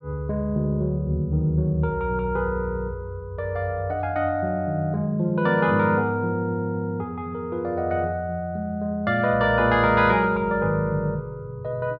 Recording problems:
none

